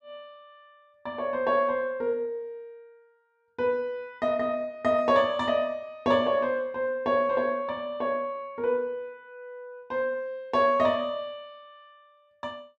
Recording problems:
none

